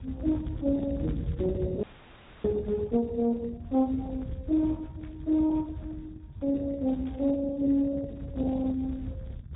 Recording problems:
low-pass filter; nothing above 3.8 kHz
codec artefacts; Speex, log-spectral distance 2 dB
low-frequency rumble; below 130 Hz, SNR 10 dB
audio freezing; at 2 s for 0.5 s
static burst; at 5 s and at 7 s; peak -18 dB vs average level

